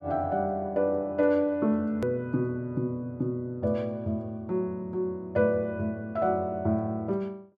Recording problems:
edit click; at 2 s

